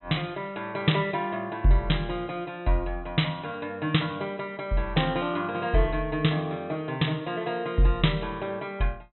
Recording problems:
treble cut off; nothing above 4 kHz

